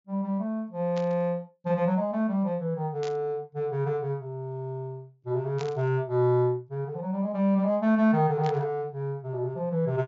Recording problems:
low-pass filter; nothing above 7.3 kHz
burst of static; 4 times, first at 1 s; peak -9 dB vs average level

